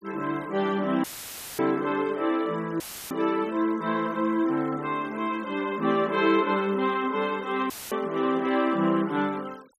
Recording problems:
denoising artefacts; signal-to-artefact ratio 24 dB
audio cutting out; at 1 s for 0.5 s, at 3 s and at 7.5 s; filled with static

